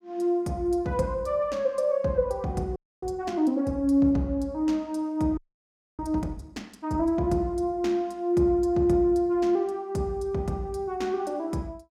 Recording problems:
audio freezing; at 3 s and at 5.5 s for 0.5 s

